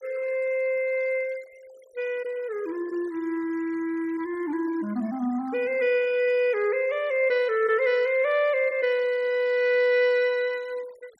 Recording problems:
noise reduction artefacts; signal-to-artefact ratio 26 dB

